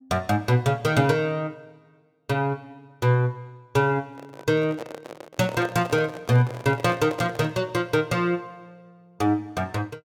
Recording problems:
microphone handling noise; from 4 to 7.5 s; peak -6 dB vs average level

